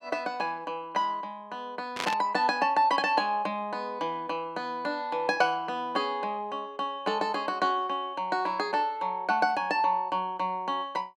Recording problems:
burst of static; at 2 s; peak +1 dB vs average level

